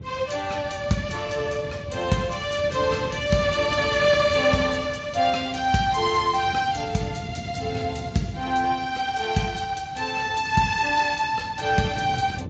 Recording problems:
lossy codec; Speex, then MP3, log-spectral distance 5 dB, nothing above 7.3 kHz
wind on the microphone; below 230 Hz, SNR 13 dB

